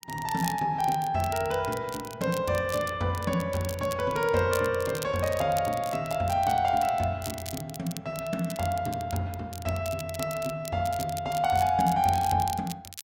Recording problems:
crackling; vinyl, SNR 14 dB

